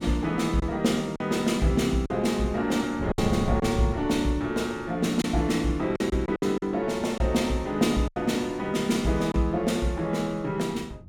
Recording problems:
wind on the microphone; below 190 Hz, SNR 16 dB
lost packets; 5% of the sound replaced, filled with silence

